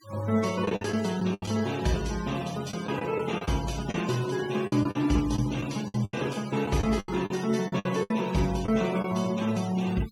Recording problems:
noise reduction artefacts; signal-to-artefact ratio 16 dB
packet loss; 10% of the sound replaced, filled with the last packet

